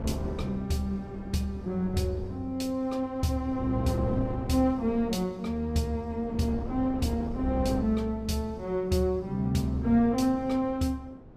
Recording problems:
wind noise; below 350 Hz, SNR 12 dB

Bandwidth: 15 kHz